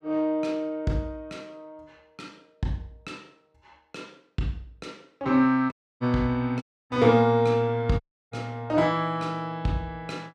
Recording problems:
dropout; at 5.5 s, at 6.5 s and at 8 s

